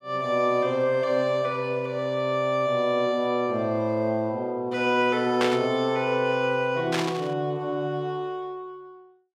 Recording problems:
burst of static; at 5.5 s and at 7 s; peak +1 dB vs average level

